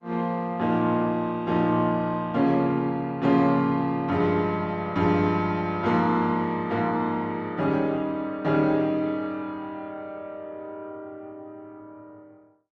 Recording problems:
codec artefacts; Opus, log-spectral distance 2 dB

